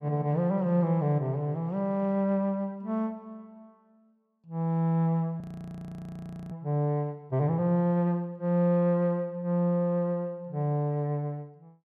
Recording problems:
audio freezing; at 5.5 s for 1 s

